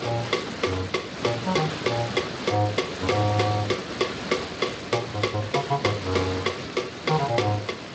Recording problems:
lossy codec; Speex, log-spectral distance 16 dB, nothing above 7.8 kHz
background hiss; SNR 6 dB

